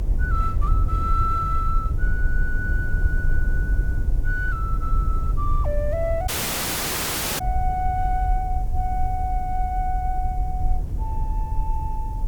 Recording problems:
background hiss; slope +1 dB per octave, SNR 27 dB
low-frequency rumble; below 66 Hz, SNR -3 dB
dropout; at 6.5 s for 1 s

